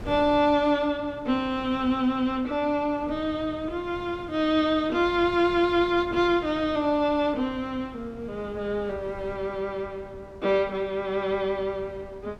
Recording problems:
wind noise; below 410 Hz, SNR 19 dB

